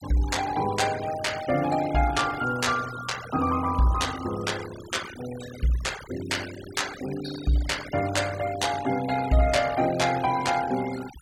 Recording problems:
noise reduction artefacts; signal-to-artefact ratio 14 dB

